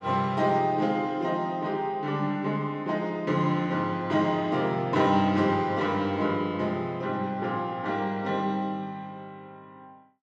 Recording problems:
none

